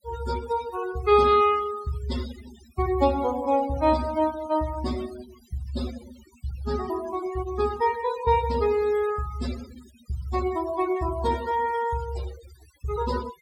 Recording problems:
denoising artefacts; signal-to-artefact ratio 15 dB

